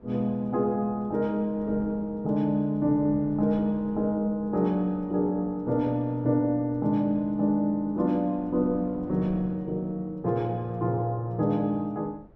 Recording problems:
wind noise; below 390 Hz, SNR 22 dB

